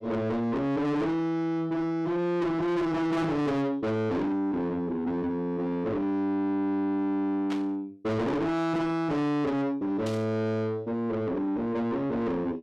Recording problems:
distortion; soft clipping, signal-to-distortion ratio 8 dB
burst of static; at 7.5 s and at 10 s; peak -7 dB vs average level

